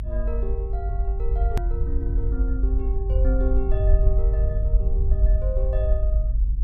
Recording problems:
rumble; below 56 Hz, strongest tone 46 Hz, SNR -10 dB
edit click; at 1.5 s

